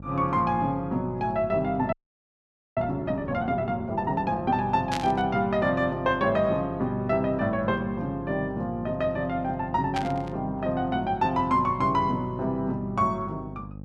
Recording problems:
hum; 50 Hz, harmonics up to 800 Hz, SNR 15 dB
frozen audio; at 2 s for 1 s
burst of static; at 5 s and at 10 s; peak -2 dB vs average level

